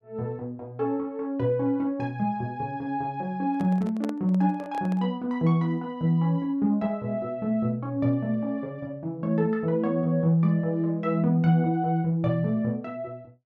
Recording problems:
microphone handling noise; from 3.5 to 5 s; peak -7 dB vs average level

